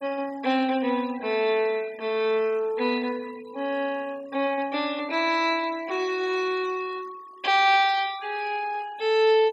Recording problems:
noise reduction artefacts; signal-to-artefact ratio 21 dB

